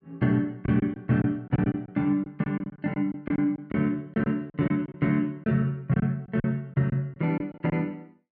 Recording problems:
lost packets; 10% of the sound replaced, filled with silence

